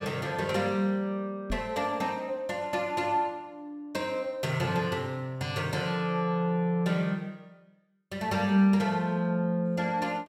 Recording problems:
microphone bump; at 1.5 s; peak -2 dB vs average level

